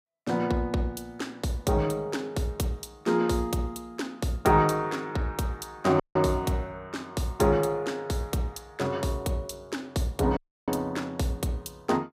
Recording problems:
dropout; at 6 s and at 10 s

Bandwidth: 15.5 kHz